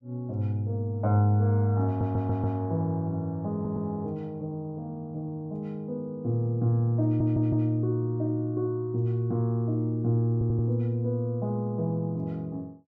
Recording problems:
audio stuttering; 4 times, first at 2 s

